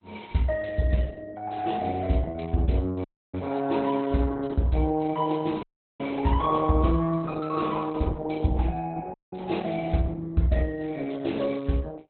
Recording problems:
lossy compression; AAC, then Opus, log-spectral distance 5 dB, nothing above 4 kHz
dropout; at 3 s, at 5.5 s and at 9 s

